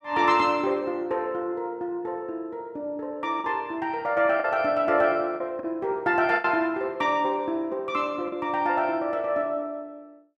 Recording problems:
packet loss; 3% of the sound replaced, filled with the last packet

